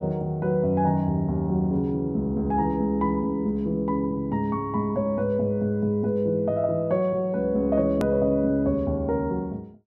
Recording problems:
hard cut with a click; at 8 s

